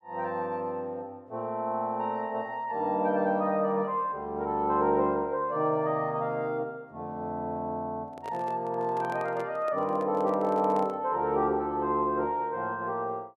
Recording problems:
handling noise; from 8 to 11 s; peak -8 dB vs average level

